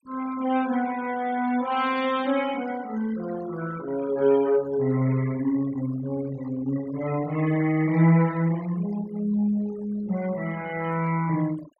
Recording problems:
denoising artefacts; signal-to-artefact ratio 19 dB

